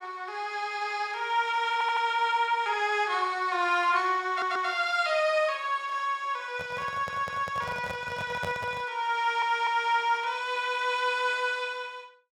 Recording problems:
stutter; 4 times, first at 1.5 s
microphone handling noise; from 6.5 to 9 s; peak -3 dB vs average level

